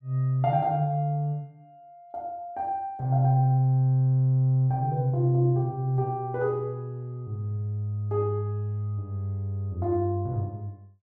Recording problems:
none

